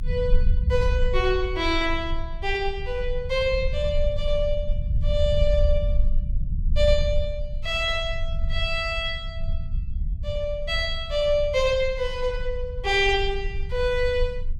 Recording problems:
low-frequency rumble; below 64 Hz, strongest tone 22 Hz, SNR 4 dB

